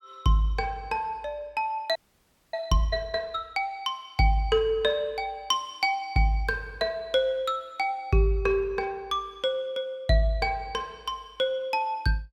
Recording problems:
audio freezing; at 2 s for 0.5 s

